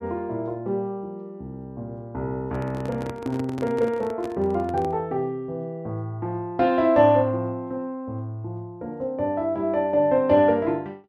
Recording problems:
microphone handling noise; from 2.5 to 5 s; peak -7 dB vs average level

